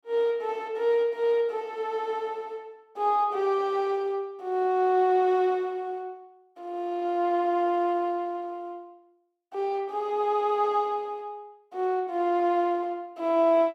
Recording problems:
none

